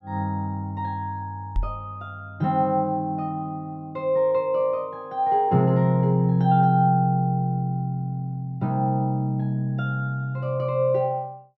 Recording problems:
microphone bump; at 1.5 s; peak 0 dB vs average level

